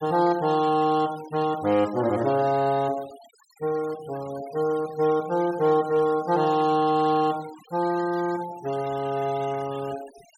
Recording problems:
denoising artefacts; signal-to-artefact ratio 19 dB

